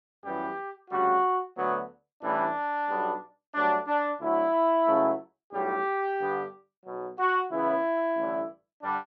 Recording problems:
none

